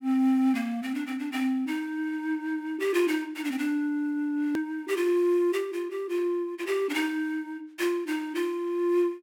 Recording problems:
edit click; at 4.5 s

